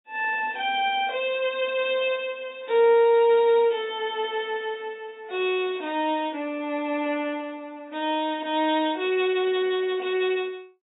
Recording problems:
lossy compression; AAC, log-spectral distance 2 dB, nothing above 3.7 kHz

